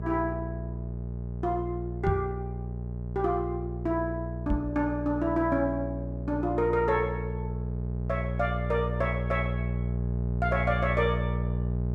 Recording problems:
mains hum; 60 Hz, harmonics up to 660 Hz, SNR 3 dB
microphone thump; at 2 s and at 4.5 s; peak +5 dB vs average level

